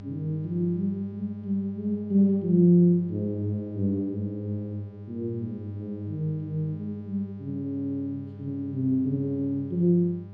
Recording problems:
electrical hum; 50 Hz, harmonics up to 800 Hz, SNR 15 dB

